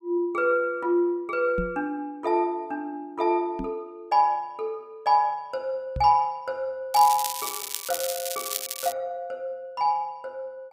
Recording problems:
microphone thump; at 1.5 s, at 3.5 s and at 6 s; peak -1 dB vs average level
crackle; from 7 to 9 s; loose cable, SNR 5 dB

